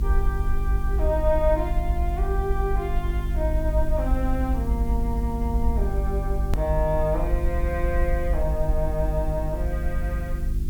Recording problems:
hum; 50 Hz, harmonics up to 400 Hz, SNR 1 dB
background hiss; slope +1 dB per octave, SNR 22 dB
rumble; below 60 Hz, SNR 0 dB
hard cut with a click; at 6.5 s

